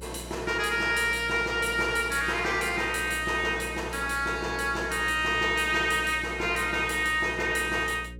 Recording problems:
electrical hum; 60 Hz, harmonics up to 540 Hz, SNR 17 dB

